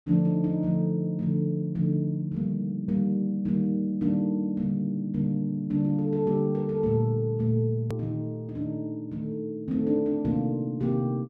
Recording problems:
edit click; at 8 s

